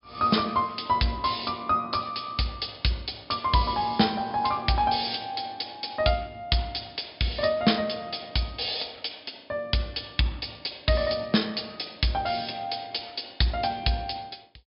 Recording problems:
treble missing; nothing above 5.5 kHz

